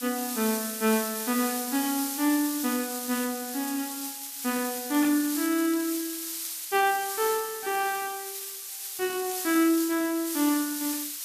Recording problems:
background hiss; slope +5 dB per octave, SNR 5 dB
crackle; from 2.5 to 6.5 s and from 9 to 10 s; loose cable, SNR 17 dB

